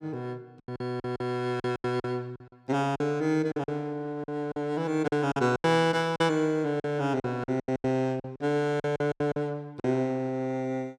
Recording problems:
packet loss; 13% of the sound replaced, filled with silence

